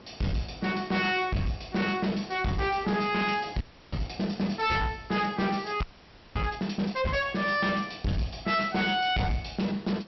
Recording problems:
low-pass filter; nothing above 5.7 kHz
distorted audio; soft clipping, signal-to-distortion ratio 7 dB
background hiss; slope -5 dB per octave, SNR 22 dB
frozen audio; at 3.5 s and at 6 s for 0.5 s

